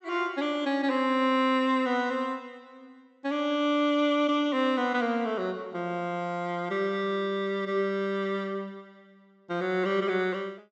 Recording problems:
treble missing; nothing above 7.9 kHz

